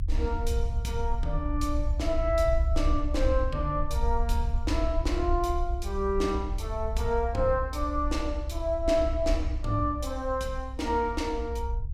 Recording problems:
rumble; below 64 Hz, SNR 2 dB

